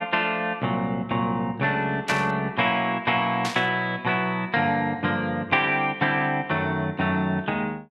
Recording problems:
static burst; at 2 s and at 3.5 s; peak -2 dB vs average level

